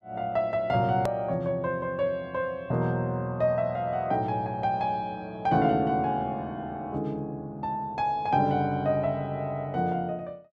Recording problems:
hard cut with a click; at 1 s

